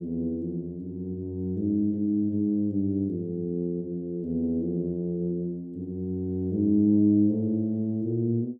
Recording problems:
none

